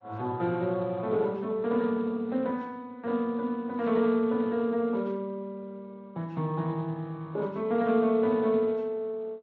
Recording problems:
lossy codec; Opus, then Speex, log-spectral distance 2 dB

